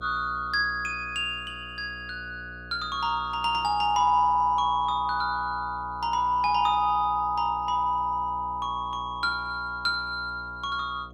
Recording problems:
electrical hum; 60 Hz, harmonics up to 720 Hz, SNR 19 dB

